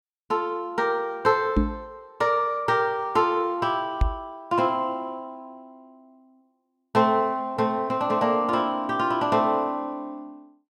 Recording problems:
microphone bump; at 1.5 s and at 4 s; peak +6 dB vs average level

